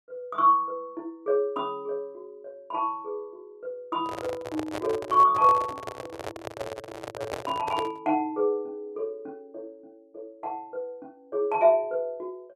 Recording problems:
handling noise; from 4 to 8 s; peak -2 dB vs average level

